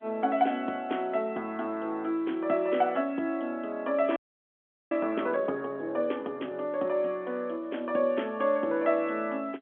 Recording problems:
phone line; 240 Hz to 3.4 kHz, G.711
frozen audio; at 4 s for 1 s

